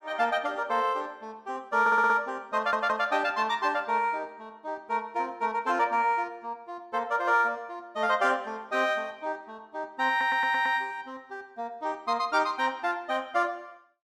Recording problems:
stutter; at 2 s, at 2.5 s and at 10 s

